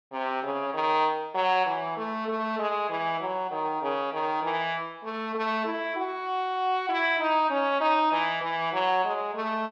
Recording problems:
none

